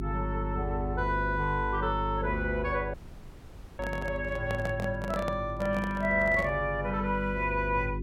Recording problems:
hum; 50 Hz, harmonics up to 400 Hz, SNR 7 dB
dropout; at 3 s for 1 s
handling noise; from 4 to 6.5 s; peak -1 dB vs average level

